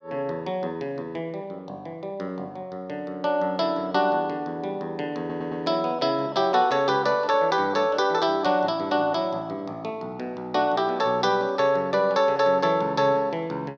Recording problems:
stutter; at 5 s

